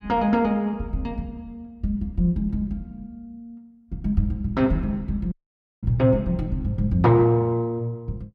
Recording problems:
audio cutting out; at 5.5 s for 0.5 s

